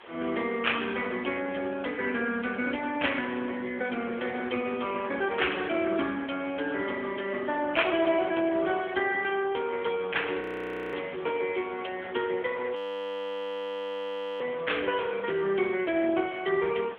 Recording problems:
phone line; 300 Hz to 3.4 kHz, AMR-NB
hiss; SNR 18 dB
frozen audio; at 10 s for 0.5 s and at 13 s for 1.5 s

